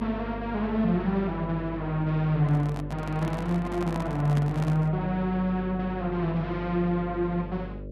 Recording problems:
hum; 50 Hz, harmonics up to 600 Hz, SNR 11 dB
handling noise; from 2.5 to 5 s; peak -3 dB vs average level

